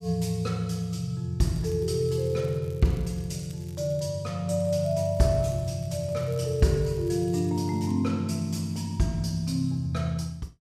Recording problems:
crackling; from 1.5 to 4 s and from 4.5 to 8 s; loose cable, SNR 27 dB

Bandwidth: 14.5 kHz